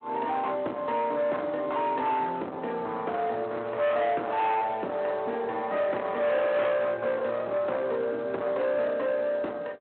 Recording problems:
phone line; 260 Hz to 3.6 kHz, Speex
distorted audio; soft clipping, signal-to-distortion ratio 8 dB

